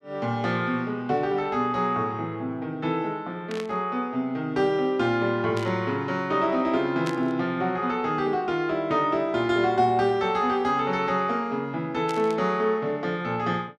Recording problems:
static burst; 4 times, first at 3.5 s; peak -7 dB vs average level

